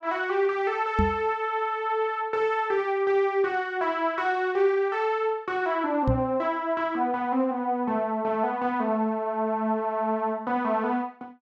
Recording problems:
microphone bump; at 1 s and at 6 s; peak +4 dB vs average level

